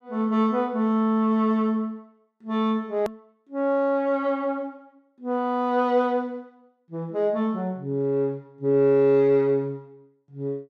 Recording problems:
hard cut with a click; at 3 s

